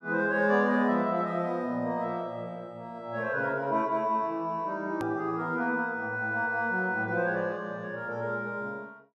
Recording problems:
click at an edit; at 5 s

